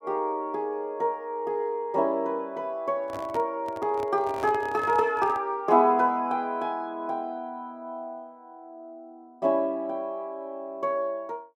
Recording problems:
handling noise; from 3 to 5.5 s; peak -8 dB vs average level

